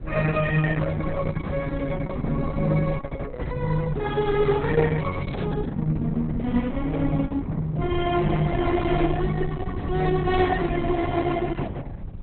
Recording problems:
lossy codec; Opus, log-spectral distance 4 dB, nothing above 3.7 kHz
rumble; below 86 Hz, SNR 11 dB
crackling; at 5 s; loose cable, SNR 27 dB

